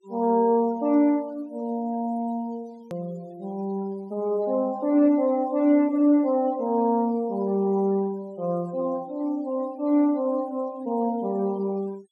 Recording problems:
denoising artefacts; signal-to-artefact ratio 28 dB
hard cut with a click; at 3 s

